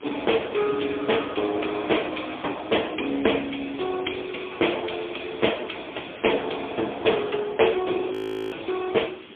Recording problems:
phone line; 260 Hz to 3.4 kHz, AMR-NB, then MP3
background hiss; SNR 22 dB
wind on the microphone; below 420 Hz, SNR 19 dB
audio freezing; at 8 s

